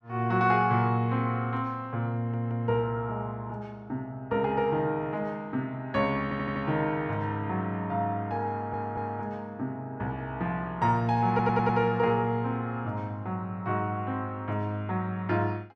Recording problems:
stutter; 4 times, first at 2 s

